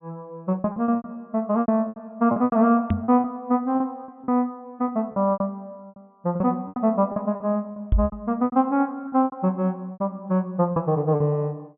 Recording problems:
treble missing; nothing above 3.6 kHz
lost packets; 15% of the sound replaced, filled with repeated pitch periods
microphone thump; at 3 s and at 8 s; peak +6 dB vs average level

